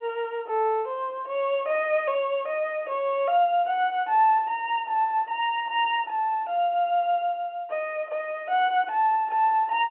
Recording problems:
phone line; 280 Hz to 3.3 kHz, G.711

